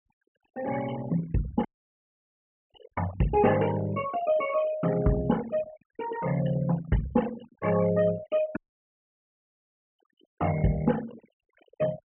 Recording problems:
low-pass filter; nothing above 3.1 kHz
noise reduction artefacts; signal-to-artefact ratio 14 dB
dropout; at 1.5 s for 1 s and at 8.5 s for 1.5 s

